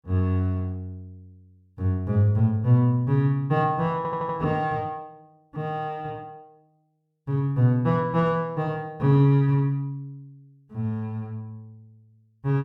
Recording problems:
audio stuttering; at 4 s

